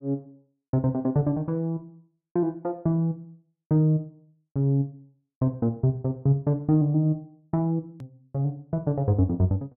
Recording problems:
edit click; at 8 s

